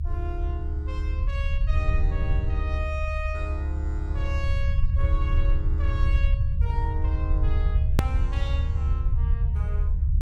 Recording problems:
rumble; below 74 Hz, SNR -11 dB
click at an edit; at 8 s

